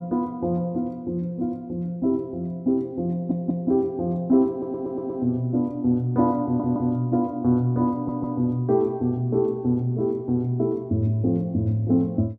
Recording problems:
audio stuttering; 4 times, first at 3 s

